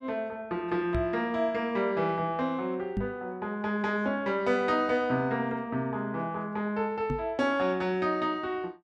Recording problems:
microphone bump; at 1 s, at 3 s and at 7 s; peak +2 dB vs average level

